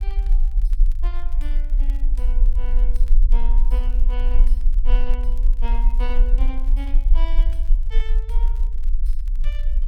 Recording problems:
rumble; below 38 Hz, strongest tone 26 Hz, SNR -16 dB
crackle; vinyl, SNR 20 dB

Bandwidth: 17.5 kHz